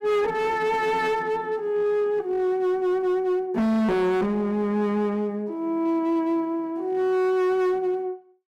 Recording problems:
distortion; hard clipping, signal-to-distortion ratio 8 dB

